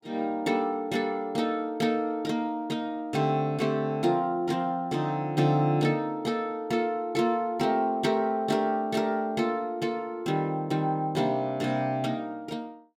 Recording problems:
none

